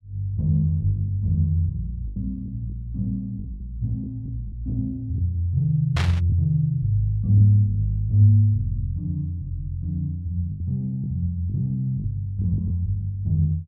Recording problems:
packet loss; 5% of the sound replaced, filled with the last packet
static burst; at 6 s; peak -2 dB vs average level

